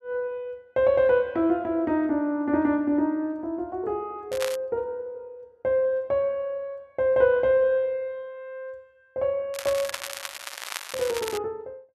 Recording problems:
crackling; at 4.5 s and from 9.5 to 11 s; loose cable, SNR 10 dB

